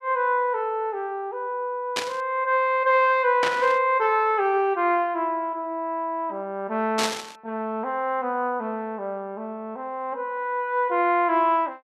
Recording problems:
burst of static; at 2 s, at 3.5 s and at 7 s; peak +3 dB vs average level

